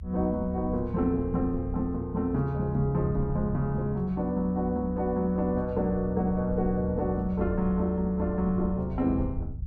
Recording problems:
low-frequency rumble; below 80 Hz, SNR 9 dB

